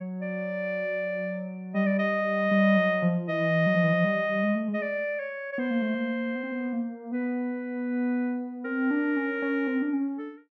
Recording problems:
none

